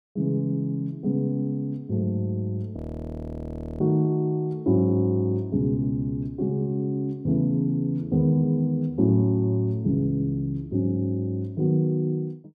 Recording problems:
audio freezing; at 3 s for 1 s

